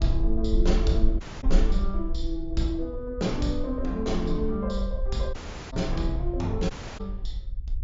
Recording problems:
low-pass filter; nothing above 7.3 kHz
rumble; below 48 Hz, SNR 2 dB
audio cutting out; at 1 s, at 5.5 s and at 6.5 s

